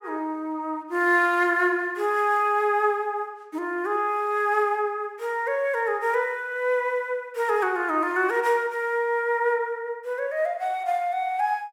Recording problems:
none

